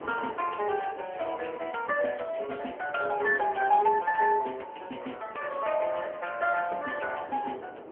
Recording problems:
phone line; 280 Hz to 3.1 kHz, AMR-NB
wind on the microphone; below 730 Hz, SNR 17 dB

